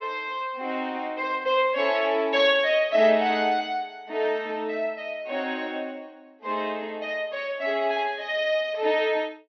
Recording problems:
treble cut off; nothing above 6.1 kHz

